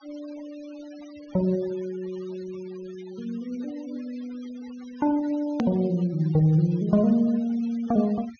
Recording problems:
treble missing; nothing above 6.5 kHz
noise reduction artefacts; signal-to-artefact ratio 25 dB
edit click; at 5.5 s

